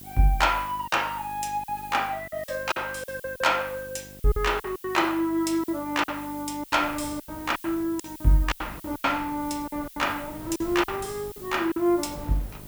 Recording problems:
electrical hum; 50 Hz, harmonics up to 1.1 kHz, SNR 21 dB
hiss; slope +5 dB per octave, SNR 17 dB
wind noise; below 540 Hz, SNR 20 dB
lost packets; 11% of the sound replaced, filled with silence

